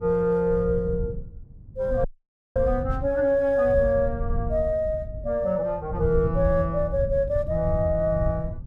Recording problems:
wind noise; below 110 Hz, SNR 8 dB
audio cutting out; at 2 s for 0.5 s

